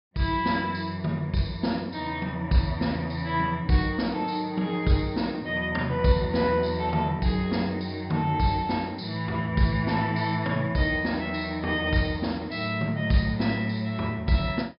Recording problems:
treble missing; nothing above 5.5 kHz

